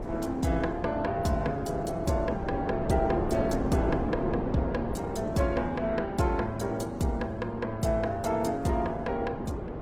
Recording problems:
lossy codec; Opus, log-spectral distance 2 dB, nothing above 18.9 kHz
wind noise; below 520 Hz, SNR 5 dB

